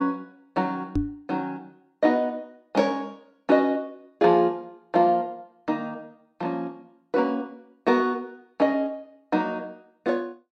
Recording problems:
microphone thump; at 1 s; peak +4 dB vs average level

